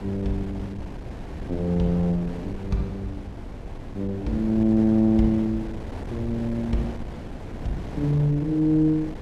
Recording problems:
electrical hum; 60 Hz, harmonics up to 1.1 kHz, SNR 27 dB
wind on the microphone; below 330 Hz, SNR 12 dB

